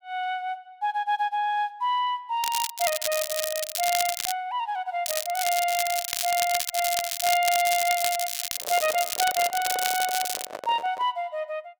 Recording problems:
crackle; from 2.5 to 4.5 s and from 5 to 10 s; loose cable, SNR 2 dB
microphone handling noise; from 8.5 to 11 s; peak -5 dB vs average level

